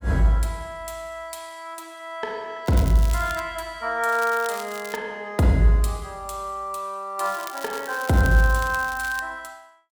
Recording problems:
crackle; at 2.5 s, at 4 s and from 7 to 9 s; loose cable, SNR 15 dB

